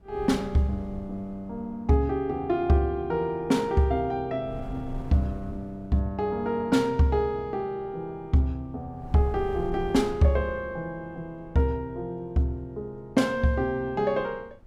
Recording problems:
wind noise; below 110 Hz, SNR 18 dB

